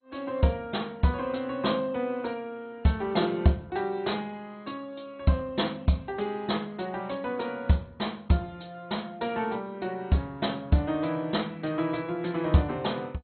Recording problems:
lossy codec; MP2, log-spectral distance 3 dB, nothing above 4.2 kHz

